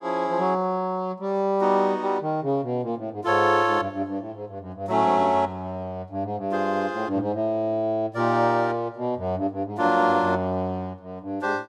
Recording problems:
none

